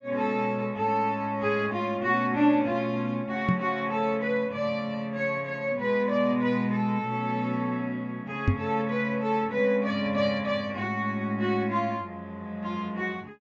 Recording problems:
treble cut off; nothing above 8 kHz
microphone thump; at 3.5 s and at 8.5 s; peak +7 dB vs average level

